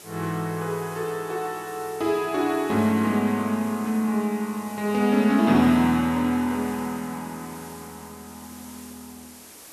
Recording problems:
hiss; SNR 20 dB

